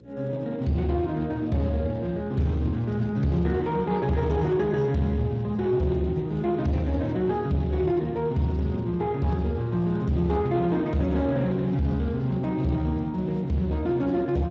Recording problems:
lossy compression; Speex, log-spectral distance 2 dB
distortion; soft clipping, signal-to-distortion ratio 12 dB
hum; 60 Hz, harmonics up to 540 Hz, SNR 26 dB

